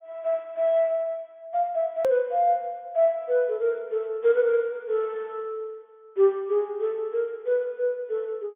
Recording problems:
low-pass filter; nothing above 3.5 kHz
edit click; at 2 s

